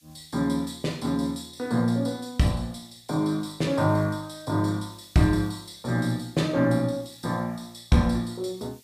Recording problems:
background hiss; SNR 30 dB

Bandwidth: 15 kHz